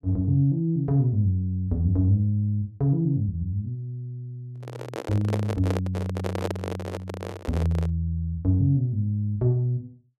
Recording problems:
handling noise; from 4.5 to 8 s; peak 0 dB vs average level

